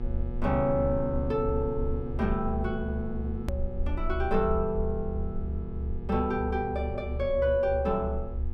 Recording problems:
hum; 60 Hz, harmonics up to 1.3 kHz, SNR 12 dB
rumble; below 72 Hz, SNR 5 dB
click at an edit; at 3.5 s

